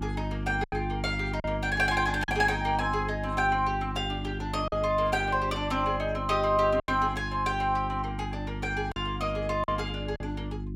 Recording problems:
hum; 50 Hz, harmonics up to 350 Hz, SNR 7 dB
packet loss; 4% of the sound replaced, filled with silence

